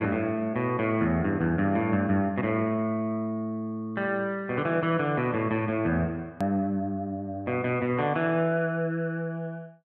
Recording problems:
hard cut with a click; at 6.5 s

